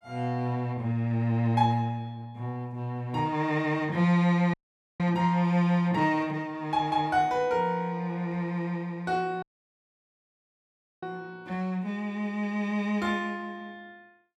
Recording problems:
dropout; at 4.5 s and at 9.5 s for 1.5 s

